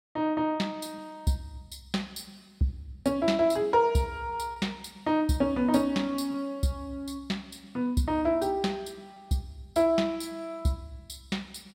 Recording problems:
packet loss; 0.9% of the sound replaced, filled with repeated pitch periods

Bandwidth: 16.5 kHz